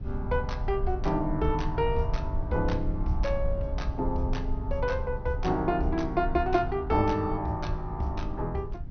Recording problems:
treble cut off; nothing above 6.2 kHz
low-frequency rumble; below 72 Hz, SNR 6 dB

